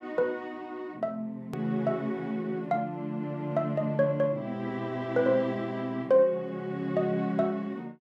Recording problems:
hard cut with a click; at 1.5 s

